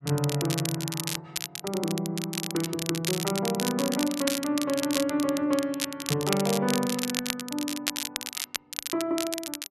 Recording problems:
crackle; vinyl, SNR 3 dB

